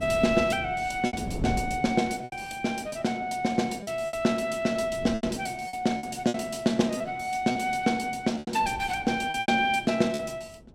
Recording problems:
wind noise; below 300 Hz, SNR 11 dB
lost packets; 8% of the sound replaced, filled with repeated pitch periods

